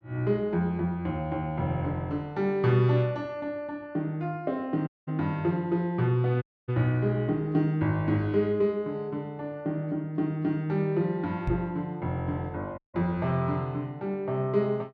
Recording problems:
audio cutting out; at 5 s, at 6.5 s and at 13 s
microphone thump; at 11 s; peak +2 dB vs average level

